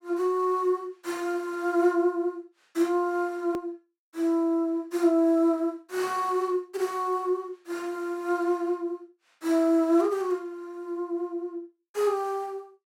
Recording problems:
click at an edit; at 3.5 s

